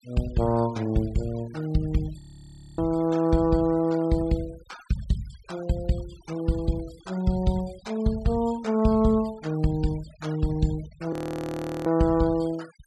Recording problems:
denoising artefacts; signal-to-artefact ratio 22 dB
frozen audio; at 2 s for 0.5 s and at 11 s for 0.5 s

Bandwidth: 12.5 kHz